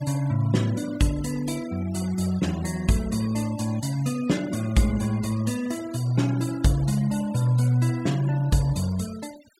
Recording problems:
noise reduction artefacts; signal-to-artefact ratio 18 dB

